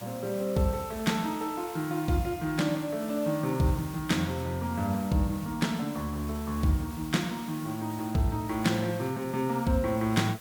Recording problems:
hiss; slope -2 dB per octave, SNR 16 dB

